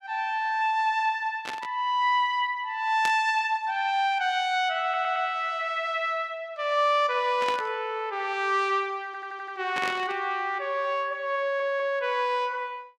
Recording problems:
static burst; 4 times, first at 1.5 s; peak -3 dB vs average level
stutter; at 5 s, at 9 s and at 11 s

